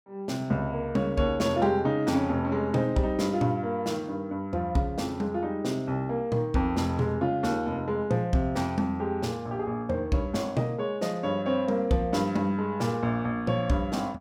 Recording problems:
none

